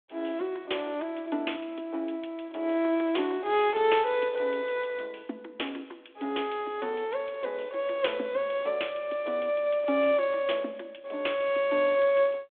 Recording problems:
telephone audio; 240 Hz to 3.6 kHz, G.726

